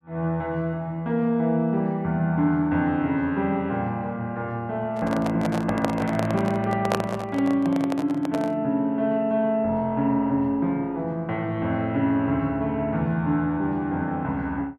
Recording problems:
microphone handling noise; from 5 to 8.5 s; peak +4 dB vs average level

